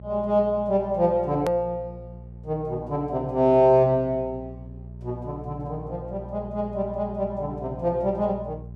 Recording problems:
mains hum; 60 Hz, harmonics up to 600 Hz, SNR 16 dB
hard cut with a click; at 1.5 s

